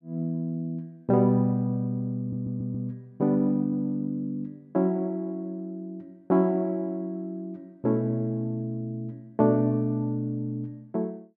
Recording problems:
audio stuttering; at 2 s

